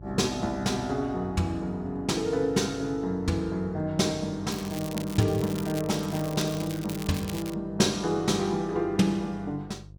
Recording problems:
hum; 50 Hz, harmonics up to 550 Hz, SNR 18 dB
crackle; from 4.5 to 7.5 s; loose cable, SNR 13 dB

